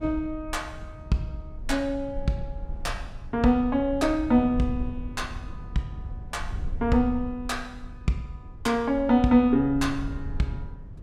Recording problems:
low-frequency rumble; below 80 Hz, SNR 12 dB

